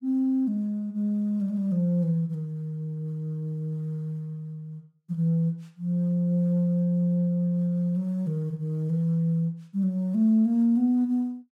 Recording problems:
none

